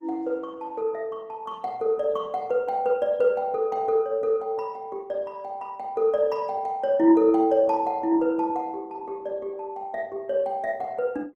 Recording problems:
lossy codec; Opus, log-spectral distance 2 dB, nothing above 15.6 kHz

